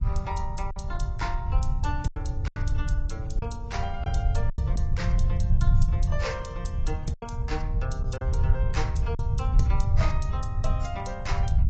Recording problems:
codec artefacts; AAC, log-spectral distance 2 dB, nothing above 7.8 kHz
low-frequency rumble; below 88 Hz, SNR -7 dB
lost packets; 4% of the sound replaced, filled with silence

